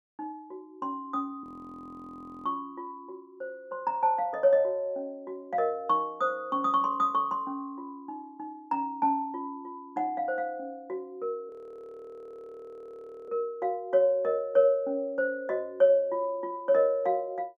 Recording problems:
frozen audio; at 1.5 s for 1 s and at 12 s for 2 s

